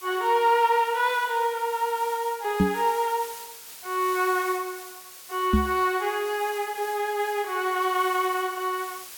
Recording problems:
background hiss; slope +2 dB per octave, SNR 15 dB
microphone thump; at 2.5 s and at 5.5 s; peak +7 dB vs average level

